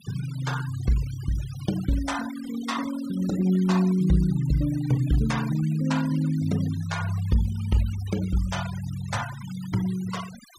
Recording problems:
denoising artefacts; signal-to-artefact ratio 16 dB

